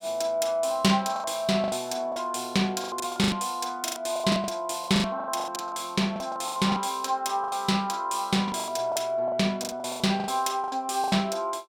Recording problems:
lost packets; 17% of the sound replaced, filled with the last packet

